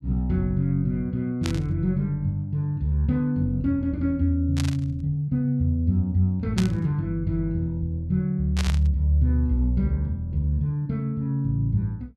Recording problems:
static burst; 4 times, first at 1.5 s; peak -2 dB vs average level

